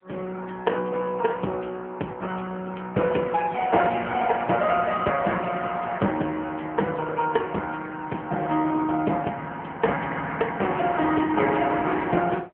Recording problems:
telephone audio; 240 Hz to 2.8 kHz, AMR-NB

